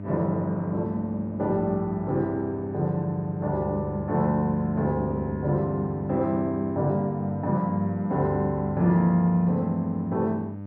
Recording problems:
electrical hum; 50 Hz, harmonics up to 900 Hz, SNR 10 dB

